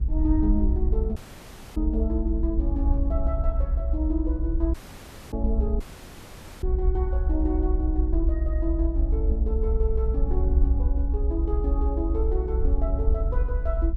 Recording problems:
rumble; below 62 Hz, SNR -5 dB
audio cutting out; at 1 s for 0.5 s, at 4.5 s for 0.5 s and at 6 s for 1 s

